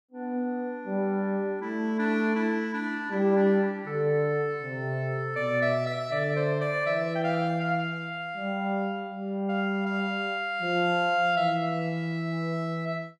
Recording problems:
none

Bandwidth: 13.5 kHz